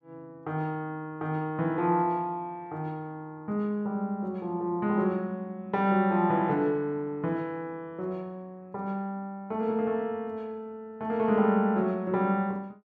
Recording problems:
none

